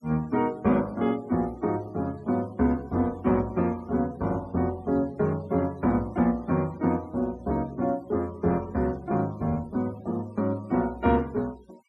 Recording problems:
denoising artefacts; signal-to-artefact ratio 26 dB

